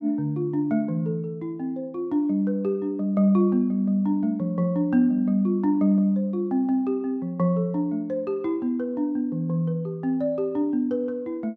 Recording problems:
none

